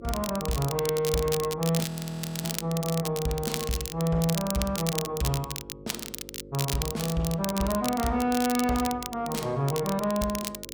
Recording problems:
distortion; soft clipping, signal-to-distortion ratio 10 dB
hum; 50 Hz, harmonics up to 550 Hz, SNR 18 dB
crackle; vinyl, SNR 7 dB
audio freezing; at 2 s for 0.5 s

